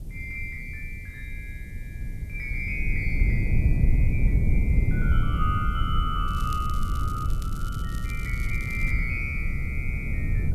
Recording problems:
background hiss; SNR 25 dB
low-frequency rumble; below 100 Hz, SNR -6 dB
crackling; from 6.5 to 9 s; loose cable, SNR 14 dB

